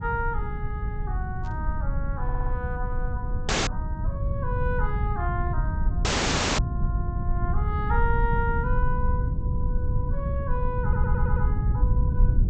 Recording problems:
treble missing; nothing above 8 kHz
rumble; below 100 Hz, SNR -5 dB
static burst; at 1.5 s; peak -16 dB vs average level
stutter; at 2 s and at 11 s
audio cutting out; at 3.5 s and at 6 s for 0.5 s

